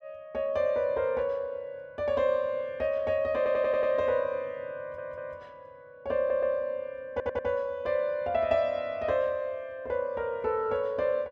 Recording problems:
audio stuttering; 4 times, first at 3.5 s

